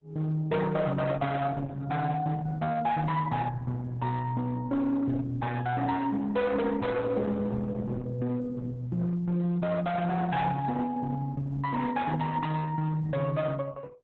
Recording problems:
lossy compression; Opus, then Opus, log-spectral distance 3 dB
distorted audio; hard clipping, signal-to-distortion ratio 11 dB

